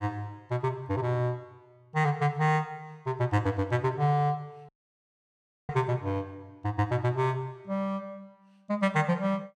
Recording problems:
audio cutting out; at 4.5 s for 1 s

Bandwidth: 14.5 kHz